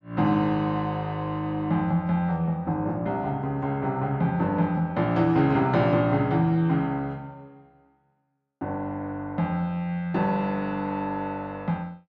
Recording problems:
none

